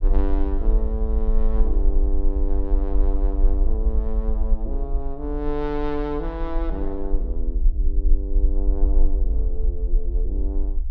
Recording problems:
low-frequency rumble; below 46 Hz, strongest tone 22 Hz, SNR -6 dB

